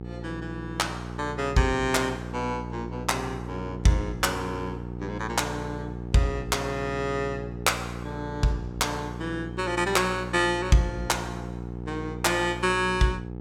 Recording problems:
hum; 60 Hz, harmonics up to 900 Hz, SNR 9 dB

